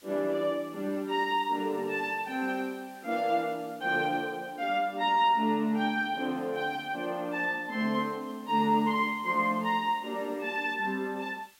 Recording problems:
background hiss; slope +2 dB per octave, SNR 27 dB

